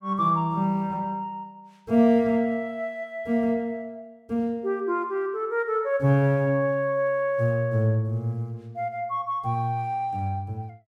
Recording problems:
none

